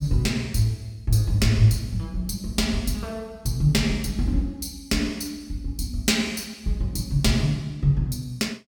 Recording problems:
none

